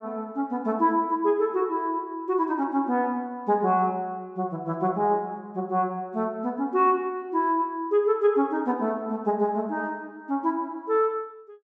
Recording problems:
treble cut off; nothing above 7.9 kHz

